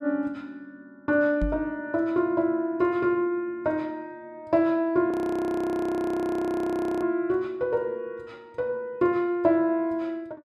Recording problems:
microphone thump; at 1.5 s; peak 0 dB vs average level
frozen audio; at 5 s for 2 s

